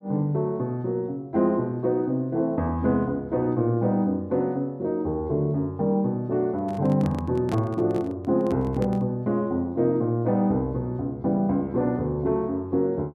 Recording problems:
microphone handling noise; from 6.5 to 9 s; peak -3 dB vs average level

